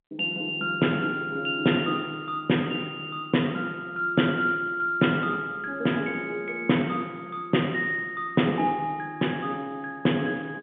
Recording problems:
telephone audio; 170 Hz to 3.6 kHz, G.711

